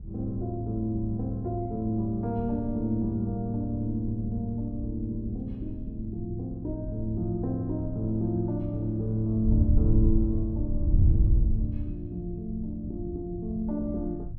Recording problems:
wind noise; below 92 Hz, SNR 2 dB

